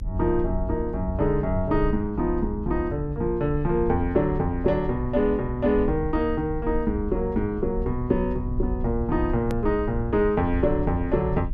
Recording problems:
rumble; below 74 Hz, SNR 8 dB
hard cut with a click; at 9.5 s

